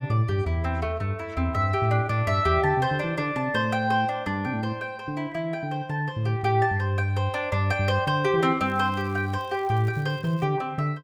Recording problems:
crackling; from 8.5 to 10 s; loose cable, SNR 30 dB

